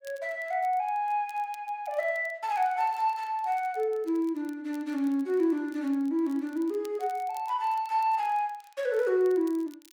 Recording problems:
crackle; vinyl, SNR 28 dB

